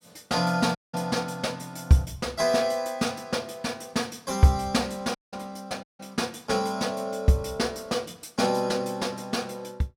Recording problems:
audio cutting out; at 1 s, at 5 s and at 6 s

